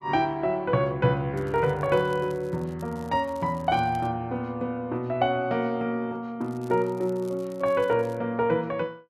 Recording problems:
crackle; from 1.5 to 4 s and from 6.5 to 8 s; loose cable, SNR 29 dB

